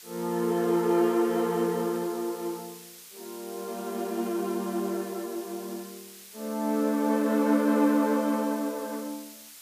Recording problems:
hiss; slope +3 dB per octave, SNR 17 dB

